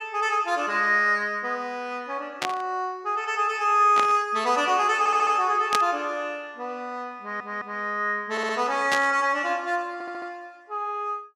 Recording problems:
static burst; 4 times, first at 2.5 s; peak +2 dB vs average level
stutter; 4 times, first at 5 s

